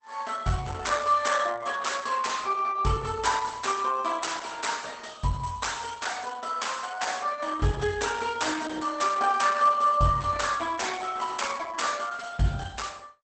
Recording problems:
lossy codec; Opus, log-spectral distance 7 dB, nothing above 8.2 kHz

